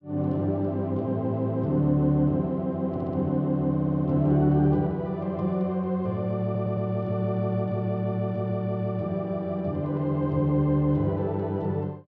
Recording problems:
audio stuttering; at 3 s, at 3.5 s and at 6.5 s

